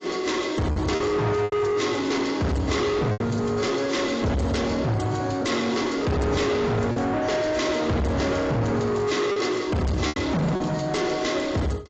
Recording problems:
lossy codec; AAC, log-spectral distance 4 dB, nothing above 7.6 kHz
distorted audio; soft clipping, signal-to-distortion ratio 6 dB
packet loss; 4% of the sound replaced, filled with repeated pitch periods

